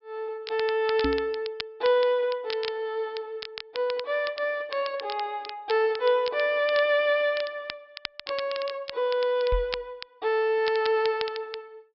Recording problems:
treble missing; nothing above 5.3 kHz
crackling; vinyl, SNR 13 dB
microphone thump; at 1 s and at 9.5 s; peak 0 dB vs average level

